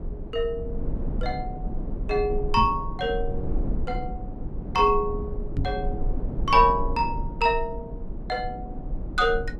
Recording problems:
low-frequency rumble; below 110 Hz, SNR 7 dB
microphone bump; at 2.5 s and at 5.5 s; peak +2 dB vs average level

